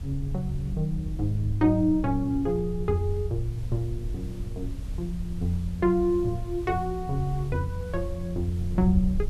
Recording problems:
hiss; slope -4 dB per octave, SNR 23 dB
wind noise; below 80 Hz, SNR 8 dB

